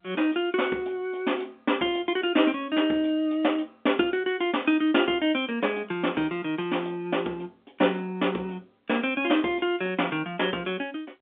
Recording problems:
phone line; 260 Hz to 3.6 kHz, G.711

